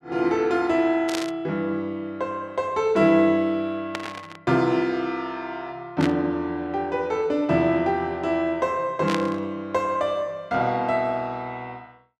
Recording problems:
static burst; 4 times, first at 1 s; peak -1 dB vs average level

